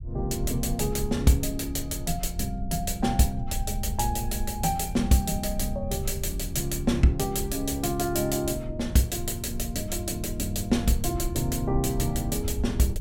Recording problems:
rumble; below 72 Hz, SNR 9 dB

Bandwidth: 16.5 kHz